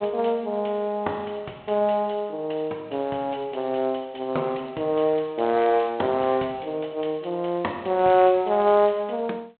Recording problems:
telephone audio; 300 Hz to 3.8 kHz, G.726

